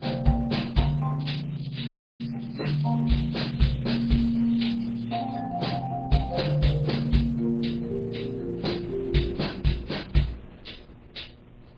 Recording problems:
lossy compression; MP3, then Opus, log-spectral distance 5 dB, nothing above 8 kHz
hum; 60 Hz, harmonics up to 1.3 kHz, SNR 27 dB
wind on the microphone; below 290 Hz, SNR 24 dB
crackling; from 1 to 5.5 s; loose cable, SNR 25 dB
audio cutting out; at 2 s

